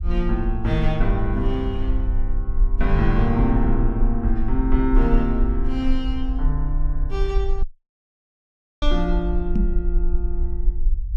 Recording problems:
low-frequency rumble; below 46 Hz, strongest tone 26 Hz, SNR 0 dB
dropout; at 7.5 s for 1 s
knock on the microphone; at 9.5 s; peak +5 dB vs average level

